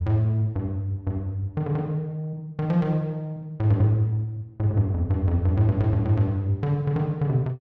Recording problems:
none

